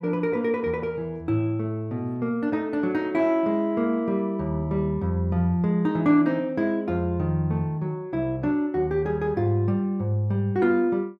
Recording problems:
none

